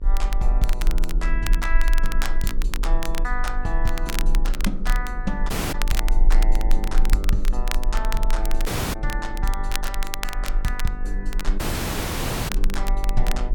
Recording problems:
mains hum; 50 Hz, harmonics up to 1.1 kHz, SNR 9 dB
rumble; below 34 Hz, strongest tone 20 Hz, SNR -5 dB
crackle; vinyl, SNR 4 dB
audio cutting out; at 5.5 s, at 8.5 s and at 12 s for 1 s

